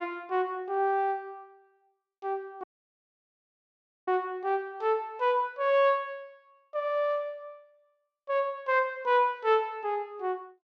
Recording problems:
dropout; at 2.5 s for 1.5 s

